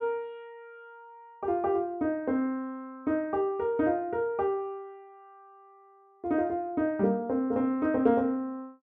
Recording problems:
none

